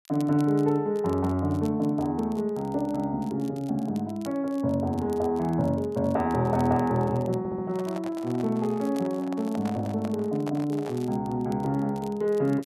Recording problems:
crackling; vinyl, SNR 26 dB
stutter; at 7.5 s
handling noise; from 7.5 to 11 s; peak -6 dB vs average level

